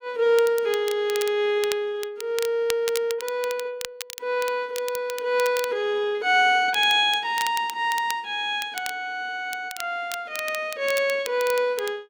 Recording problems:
crackling; vinyl, SNR 13 dB

